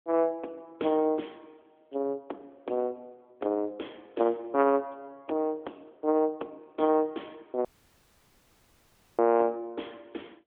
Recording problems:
telephone audio; 240 Hz to 3.4 kHz, AMR-NB
audio cutting out; at 7.5 s for 1.5 s

